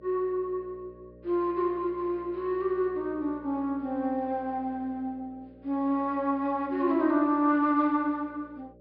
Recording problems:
treble cut off; nothing above 5 kHz
hum; 60 Hz, harmonics up to 600 Hz, SNR 23 dB

